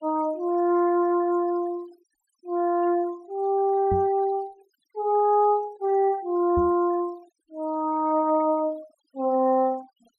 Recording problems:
denoising artefacts; signal-to-artefact ratio 27 dB
microphone thump; at 4 s and at 6.5 s; peak -3 dB vs average level

